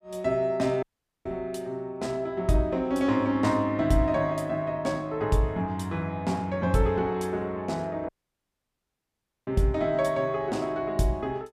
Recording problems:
audio cutting out; at 1 s and at 8 s for 1.5 s

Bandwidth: 15 kHz